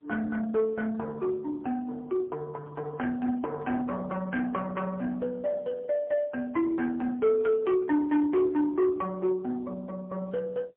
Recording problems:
telephone audio; 220 Hz to 2.3 kHz, AMR-NB, then MP3
distorted audio; soft clipping, signal-to-distortion ratio 13 dB

